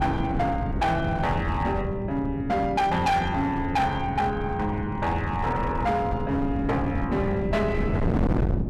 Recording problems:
distortion; hard clipping, signal-to-distortion ratio 7 dB
wind on the microphone; below 250 Hz, SNR 4 dB

